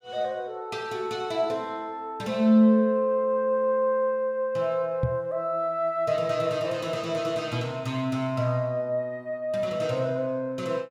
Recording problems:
knock on the microphone; at 5 s; peak +3 dB vs average level

